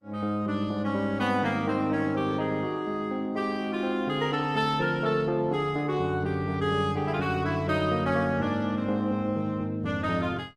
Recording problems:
codec artefacts; Opus, log-spectral distance 2 dB, nothing above 16.6 kHz

